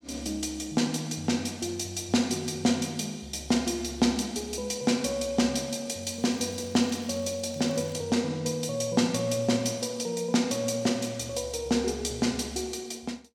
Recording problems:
crackle; from 6 to 8 s; loose cable, SNR 26 dB

